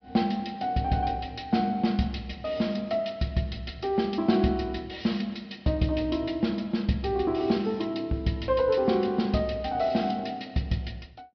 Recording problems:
low-pass filter; nothing above 5.5 kHz

